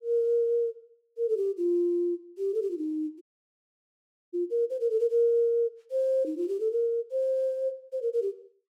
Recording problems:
dropout; at 3 s for 1 s

